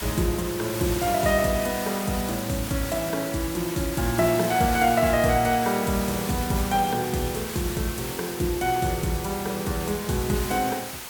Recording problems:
hiss; slope -1 dB per octave, SNR 8 dB

